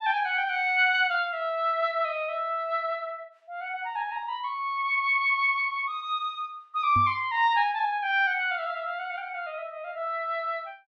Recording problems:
knock on the microphone; at 7 s; peak -3 dB vs average level

